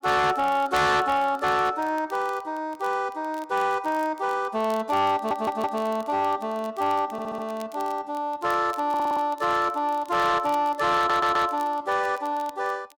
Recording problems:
distortion; soft clipping, signal-to-distortion ratio 11 dB
crackling; vinyl, SNR 26 dB
stutter; 4 times, first at 5 s

